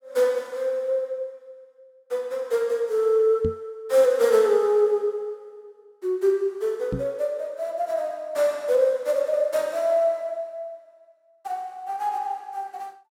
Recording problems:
microphone bump; at 3.5 s and at 7 s; peak -1 dB vs average level

